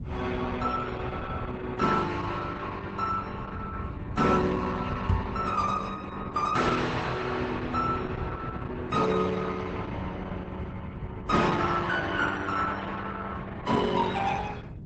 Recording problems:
lossy compression; Vorbis, then Opus, log-spectral distance 4 dB, nothing above 8 kHz
low-frequency rumble; below 160 Hz, SNR 10 dB
microphone bump; at 5 s; peak +7 dB vs average level

